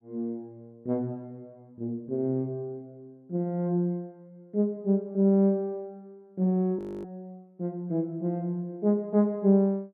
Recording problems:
frozen audio; at 7 s

